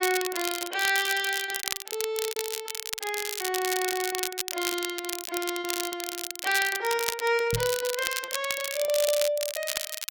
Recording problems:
crackling; vinyl, SNR 3 dB
packet loss; 13% of the sound replaced, filled with repeated pitch periods
knock on the microphone; at 7.5 s; peak +1 dB vs average level

